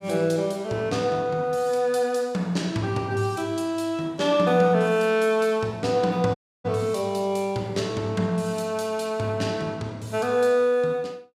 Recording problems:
dropout; at 6.5 s

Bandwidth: 15 kHz